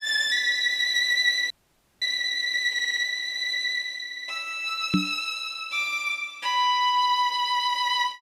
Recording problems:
audio freezing; at 1.5 s for 0.5 s
audio stuttering; at 2.5 s and at 4 s
microphone bump; at 5 s; peak +5 dB vs average level

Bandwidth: 15.5 kHz